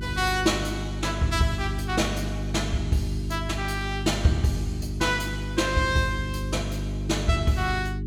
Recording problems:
electrical hum; 50 Hz, harmonics up to 400 Hz, SNR 5 dB

